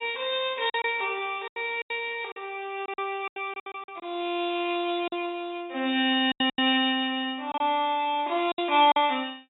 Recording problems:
low-pass filter; nothing above 4 kHz
packet loss; 10% of the sound replaced, filled with silence

